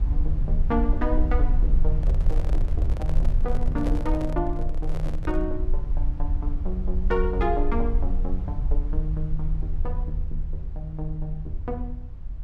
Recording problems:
rumble; below 52 Hz, strongest tone 22 Hz, SNR -3 dB
microphone handling noise; from 2 to 5.5 s; peak +1 dB vs average level

